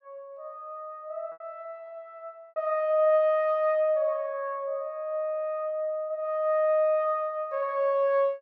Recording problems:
lost packets; 1.7% of the sound replaced, filled with repeated pitch periods

